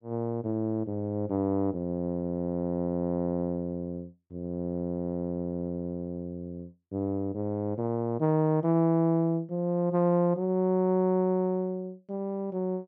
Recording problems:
none

